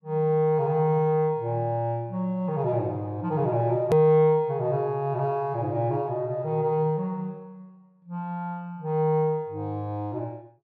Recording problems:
hard cut with a click; at 4 s

